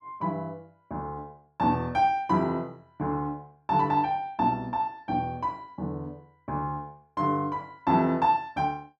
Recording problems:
none

